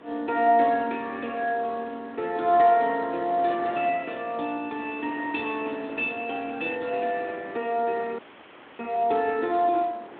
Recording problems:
phone line; 190 Hz to 3.5 kHz, Speex
wind noise; below 1.2 kHz, SNR 20 dB
audio cutting out; at 8 s for 0.5 s

